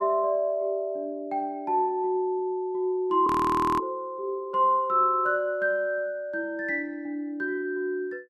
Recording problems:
audio freezing; at 3.5 s for 0.5 s

